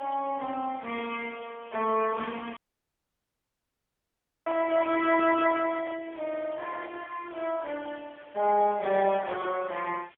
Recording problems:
telephone audio; 280 Hz to 3.3 kHz, AMR-NB, then MP3
hiss; SNR 27 dB
audio cutting out; at 2.5 s for 2 s
microphone handling noise; from 4.5 to 6 s; peak -8 dB vs average level

